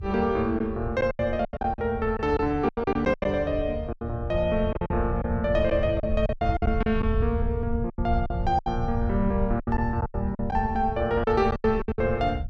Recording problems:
low-frequency rumble; below 92 Hz, SNR 6 dB
packet loss; 13% of the sound replaced, filled with silence

